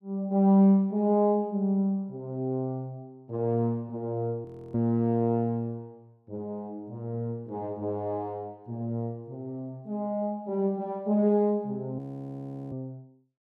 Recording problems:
audio freezing; at 4.5 s and at 12 s for 0.5 s

